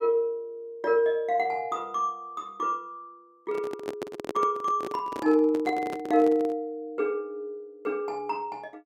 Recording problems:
handling noise; from 3.5 to 6.5 s; peak -1 dB vs average level

